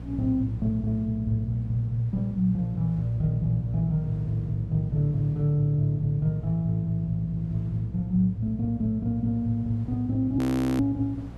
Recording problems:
hum; 60 Hz, harmonics up to 480 Hz, SNR 12 dB
wind on the microphone; below 580 Hz, SNR 28 dB
frozen audio; at 10 s

